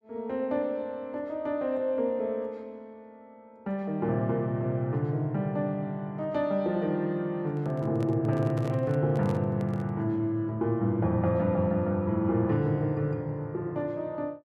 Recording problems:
microphone handling noise; from 7.5 to 10 s; peak -7 dB vs average level

